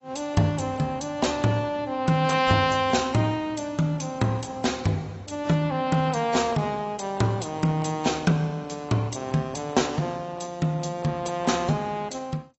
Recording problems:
lossy compression; AAC, log-spectral distance 5 dB, nothing above 7.8 kHz

